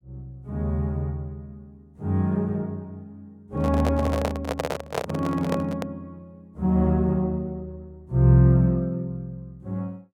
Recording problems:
microphone handling noise; from 3.5 to 6 s; peak +2 dB vs average level

